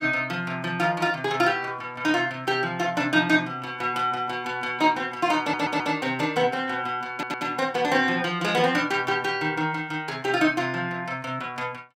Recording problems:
audio stuttering; at 5.5 s and at 7 s

